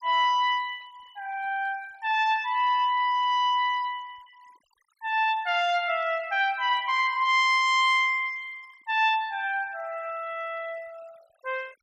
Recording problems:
denoising artefacts; signal-to-artefact ratio 27 dB

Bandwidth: 14.5 kHz